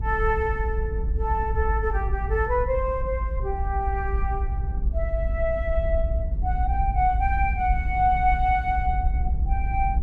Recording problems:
low-frequency rumble; below 66 Hz, SNR 1 dB

